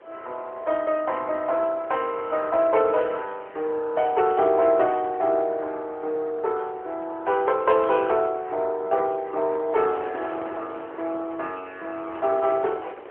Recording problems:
telephone audio; 340 Hz to 3.6 kHz, AMR-NB
wind noise; below 1 kHz, SNR 20 dB

